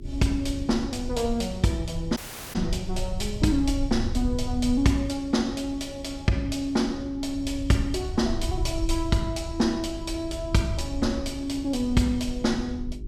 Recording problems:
hum; 50 Hz, harmonics up to 400 Hz, SNR 18 dB
low-frequency rumble; below 78 Hz, SNR 9 dB
dropout; at 2 s

